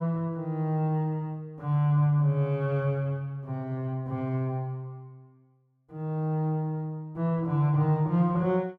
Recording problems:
none

